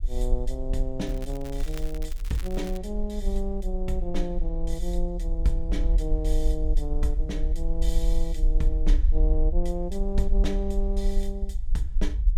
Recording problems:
rumble; below 44 Hz, SNR -4 dB
crackle; from 1 to 3 s; loose cable, SNR 14 dB

